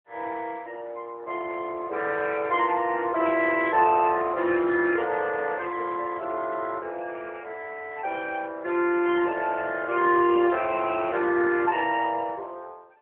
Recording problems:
phone line; 280 Hz to 3.5 kHz, AMR-NB

